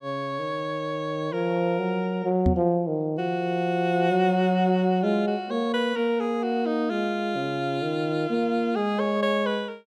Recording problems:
microphone thump; at 2.5 s; peak +5 dB vs average level

